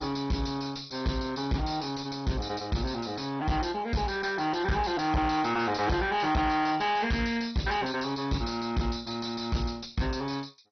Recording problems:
codec artefacts; MP2, log-spectral distance 6 dB, nothing above 5.8 kHz
distortion; soft clipping, signal-to-distortion ratio 6 dB

